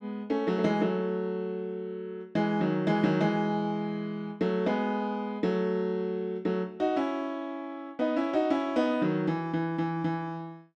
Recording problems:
none

